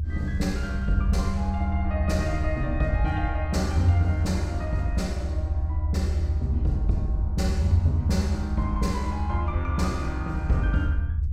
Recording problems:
rumble; below 80 Hz, SNR 0 dB

